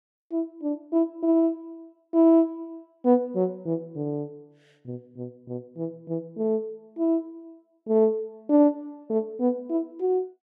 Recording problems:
none

